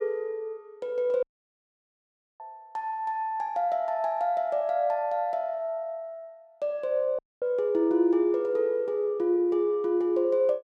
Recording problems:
dropout; at 1 s for 1 s and at 7 s

